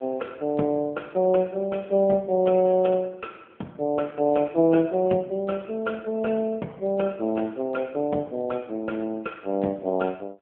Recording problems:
telephone audio; 190 Hz to 3.4 kHz, AMR-NB

